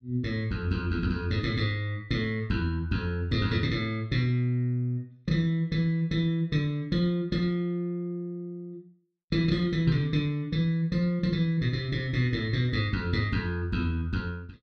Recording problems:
none

